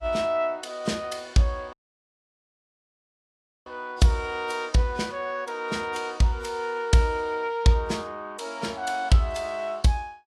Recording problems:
codec artefacts; AAC, log-spectral distance 2 dB
dropout; at 1.5 s for 2 s

